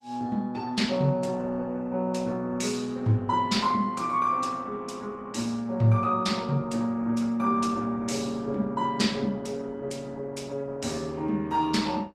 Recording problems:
lossy codec; Opus, log-spectral distance 3 dB, nothing above 15.5 kHz

